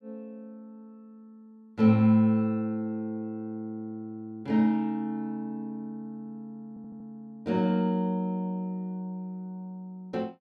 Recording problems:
stutter; at 6.5 s

